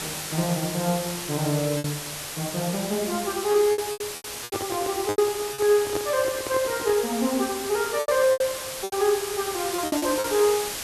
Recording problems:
background hiss; slope 0 dB per octave, SNR 6 dB
packet loss; 8% of the sound replaced, filled with repeated pitch periods
handling noise; from 4.5 to 7 s; peak 0 dB vs average level

